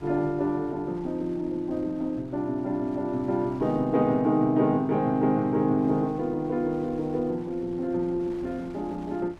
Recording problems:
wind noise; below 700 Hz, SNR 23 dB

